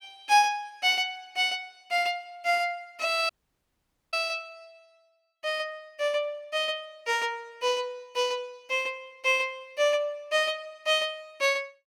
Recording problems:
dropout; at 3.5 s for 1 s

